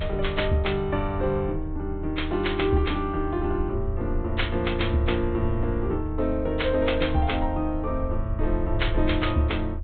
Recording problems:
low-pass filter; nothing above 4 kHz
low-frequency rumble; below 80 Hz, strongest tone 28 Hz, SNR 6 dB

